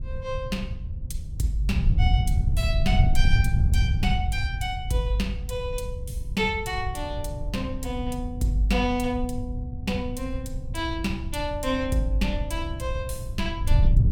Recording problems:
wind noise; below 96 Hz, SNR -1 dB

